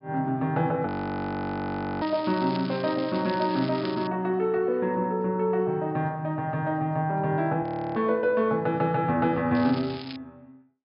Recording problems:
treble cut off; nothing above 5.5 kHz
audio freezing; at 1 s for 1 s and at 7.5 s
crackling; from 2 to 4 s and at 9.5 s; loose cable, SNR 16 dB

